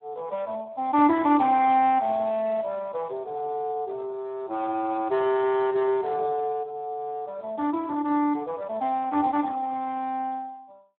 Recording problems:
phone line; 260 Hz to 3.6 kHz, Speex

